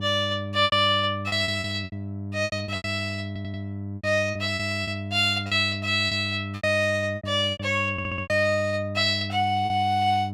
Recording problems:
hum; 50 Hz, harmonics up to 700 Hz, SNR 9 dB
lost packets; 12% of the sound replaced, filled with repeated pitch periods
audio stuttering; at 3.5 s and at 8 s

